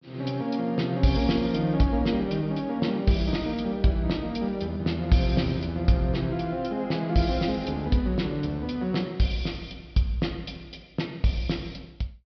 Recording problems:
low-pass filter; nothing above 5.5 kHz

